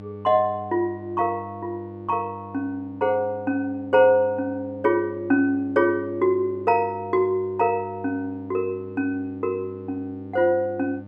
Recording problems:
electrical hum; 50 Hz, harmonics up to 900 Hz, SNR 17 dB

